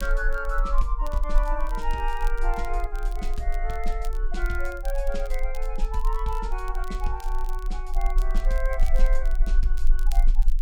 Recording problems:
low-frequency rumble; below 34 Hz, strongest tone 26 Hz, SNR -4 dB
crackle; vinyl, SNR 18 dB

